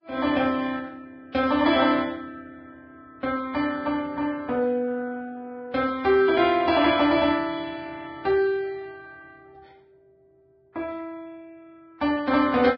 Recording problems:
lossy codec; Vorbis, log-spectral distance 2 dB

